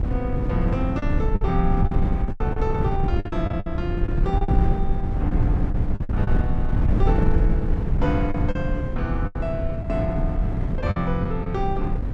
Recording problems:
wind noise; below 120 Hz, SNR -4 dB
packet loss; 8% of the sound replaced, filled with the last packet

